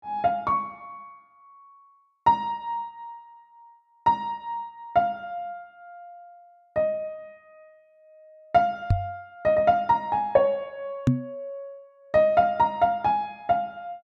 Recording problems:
microphone thump; at 9 s and at 11 s; peak +8 dB vs average level

